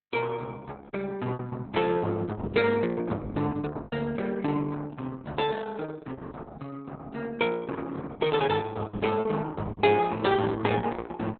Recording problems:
lossy codec; Opus, log-spectral distance 4 dB, nothing above 3.9 kHz
lost packets; 5% of the sound replaced, filled with repeated pitch periods

